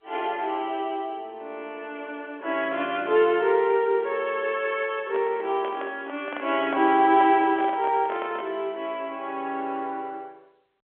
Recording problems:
telephone audio; 300 Hz to 3.4 kHz, G.711
handling noise; from 5 to 8.5 s; peak -5 dB vs average level

